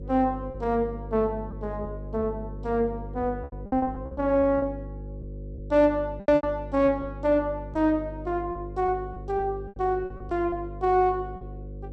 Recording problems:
electrical hum; 50 Hz, harmonics up to 550 Hz, SNR 12 dB
lost packets; 9% of the sound replaced, filled with repeated pitch periods

